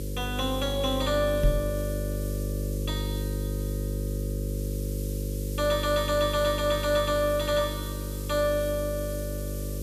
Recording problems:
hum; 50 Hz, harmonics up to 550 Hz, SNR 5 dB
background hiss; slope +4 dB per octave, SNR 15 dB
microphone bump; at 1.5 s; peak +5 dB vs average level

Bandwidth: 14.5 kHz